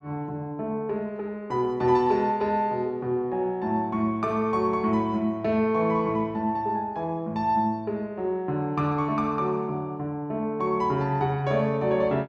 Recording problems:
none

